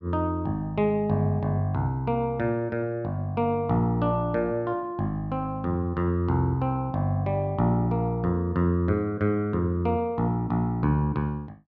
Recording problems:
none

